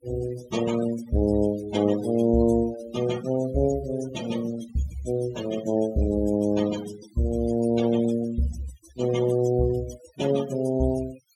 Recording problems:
denoising artefacts; signal-to-artefact ratio 15 dB

